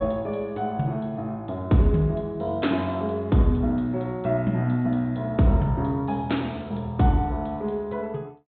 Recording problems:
treble missing; nothing above 4 kHz

